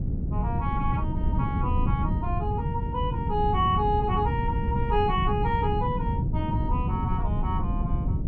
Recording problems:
wind on the microphone; below 160 Hz, SNR -1 dB

